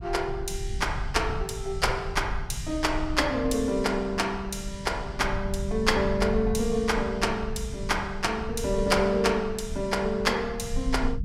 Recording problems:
low-frequency rumble; below 84 Hz, SNR 9 dB

